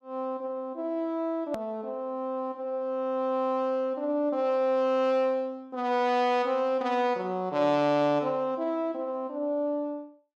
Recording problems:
hard cut with a click; at 1.5 s

